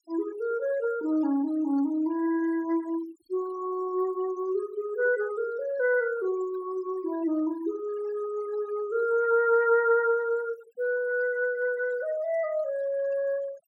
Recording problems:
denoising artefacts; signal-to-artefact ratio 22 dB

